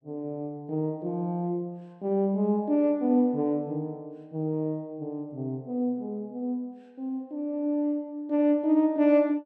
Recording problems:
none

